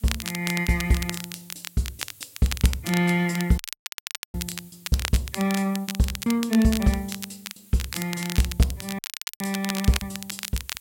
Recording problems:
lossy codec; Vorbis, log-spectral distance 2 dB, nothing above 13.8 kHz
background hiss; slope +3 dB per octave, SNR 23 dB
crackling; vinyl, SNR 8 dB
lost packets; 5% of the sound replaced, filled with repeated pitch periods
audio cutting out; at 3.5 s for 1 s and at 9 s

